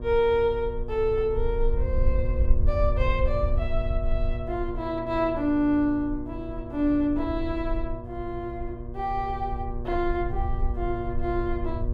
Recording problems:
electrical hum; 60 Hz, harmonics up to 1.2 kHz, SNR 11 dB
rumble; below 60 Hz, SNR 4 dB

